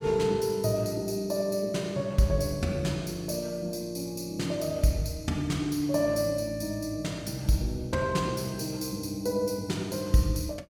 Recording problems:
none

